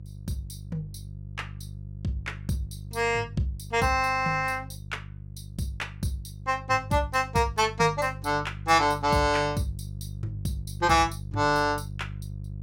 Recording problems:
hum; 50 Hz, harmonics up to 350 Hz, SNR 13 dB

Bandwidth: 16.5 kHz